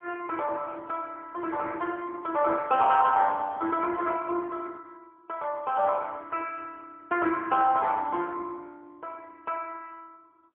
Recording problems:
telephone audio; 300 Hz to 3.2 kHz, AMR-NB

